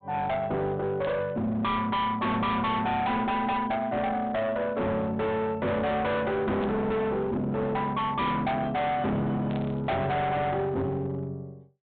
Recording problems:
treble missing; nothing above 4 kHz
distortion; hard clipping, uneven, signal-to-distortion ratio 6 dB
static burst; at 1 s, at 6.5 s and at 9.5 s; peak -12 dB vs average level

